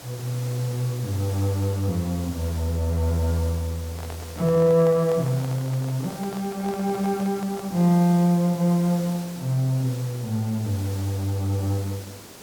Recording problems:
hiss; SNR 16 dB
microphone handling noise; from 4 to 8 s; peak -10 dB vs average level

